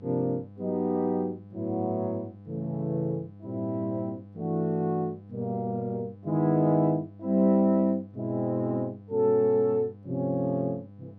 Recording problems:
mains hum; 50 Hz, harmonics up to 800 Hz, SNR 20 dB

